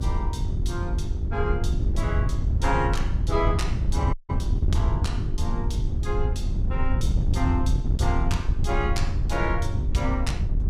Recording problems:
hum; 50 Hz, harmonics up to 400 Hz, SNR 10 dB
wind noise; below 94 Hz, SNR -5 dB
audio cutting out; at 4 s

